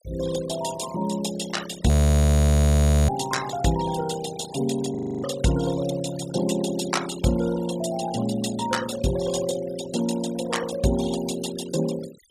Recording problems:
noise reduction artefacts; signal-to-artefact ratio 12 dB
frozen audio; at 2 s for 1 s and at 5 s

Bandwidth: 15.5 kHz